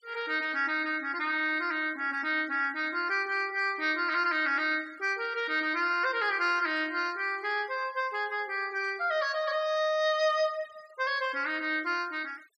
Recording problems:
denoising artefacts; signal-to-artefact ratio 25 dB

